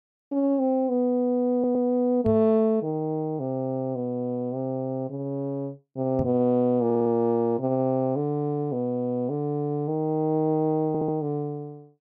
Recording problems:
audio stuttering; at 1.5 s, at 7 s and at 11 s
knock on the microphone; at 2.5 s and at 6 s; peak -2 dB vs average level

